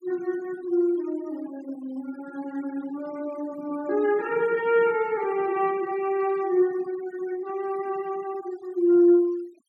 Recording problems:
noise reduction artefacts; signal-to-artefact ratio 24 dB

